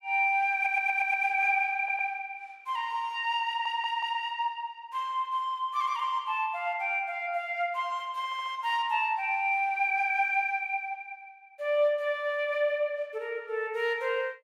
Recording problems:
stutter; 4 times, first at 0.5 s

